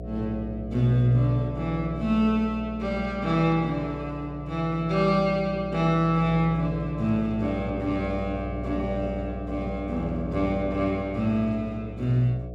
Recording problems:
hum; 60 Hz, harmonics up to 720 Hz, SNR 10 dB

